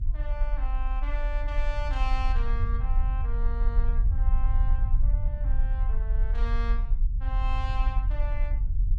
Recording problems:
rumble; below 44 Hz, SNR -11 dB

